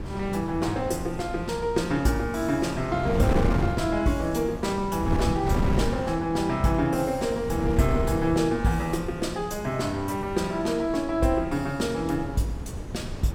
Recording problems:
wind on the microphone; below 270 Hz, SNR 6 dB

